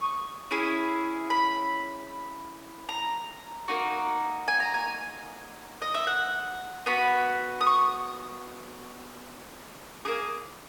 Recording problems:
hiss; SNR 18 dB

